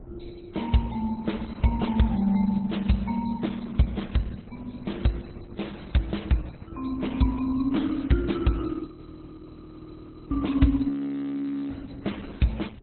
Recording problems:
lossy compression; MP3, then Opus, log-spectral distance 7 dB, nothing above 4.1 kHz
wind noise; below 270 Hz, SNR 20 dB
frozen audio; at 9 s for 1.5 s and at 11 s for 1 s

